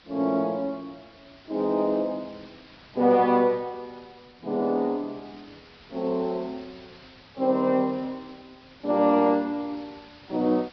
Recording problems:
treble missing; nothing above 5.5 kHz
lossy compression; AAC, log-spectral distance 8 dB
hiss; SNR 25 dB

